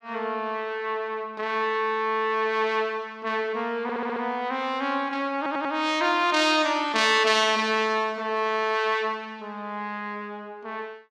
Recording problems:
stutter; at 4 s and at 5.5 s

